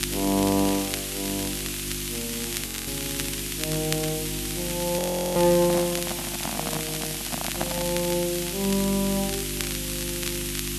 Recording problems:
hum; 50 Hz, harmonics up to 350 Hz, SNR 10 dB
background hiss; SNR 3 dB
crackling; vinyl, SNR 8 dB
audio freezing; at 2.5 s and at 5 s
microphone handling noise; from 5.5 to 8 s; peak +3 dB vs average level

